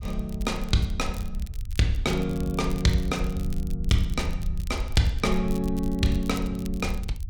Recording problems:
rumble; below 68 Hz, SNR 7 dB
crackling; vinyl, SNR 21 dB

